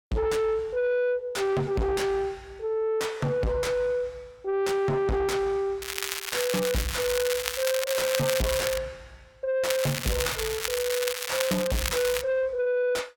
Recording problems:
distortion; soft clipping, signal-to-distortion ratio 5 dB
crackling; from 6 to 9 s and from 9.5 to 12 s; loose cable, SNR 3 dB

